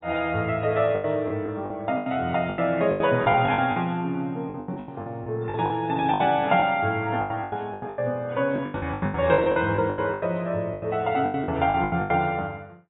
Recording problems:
codec artefacts; AAC, log-spectral distance 2 dB, nothing above 3.8 kHz
lost packets; 18% of the sound replaced, filled with the last packet

